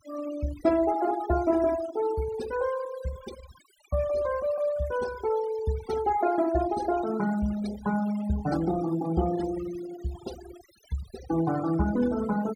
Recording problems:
denoising artefacts; signal-to-artefact ratio 14 dB

